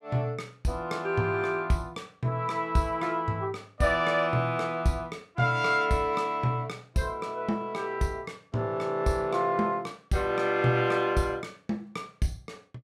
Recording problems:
none

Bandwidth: 15 kHz